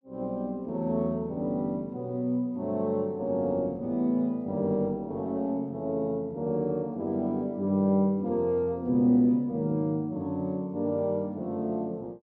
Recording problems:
none

